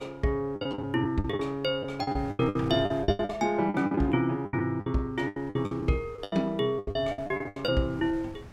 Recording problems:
wind noise; below 450 Hz, SNR 21 dB
packet loss; 18% of the sound replaced, filled with the last packet

